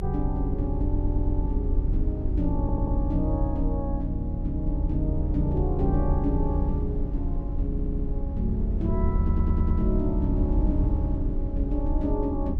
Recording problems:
low-frequency rumble; below 78 Hz, SNR -2 dB
audio stuttering; 4 times, first at 1 s

